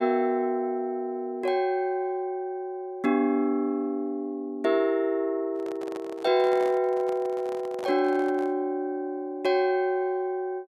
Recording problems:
microphone handling noise; from 5.5 to 8.5 s; peak -8 dB vs average level

